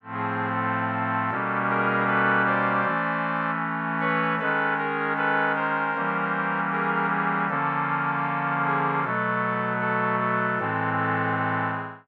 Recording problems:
none

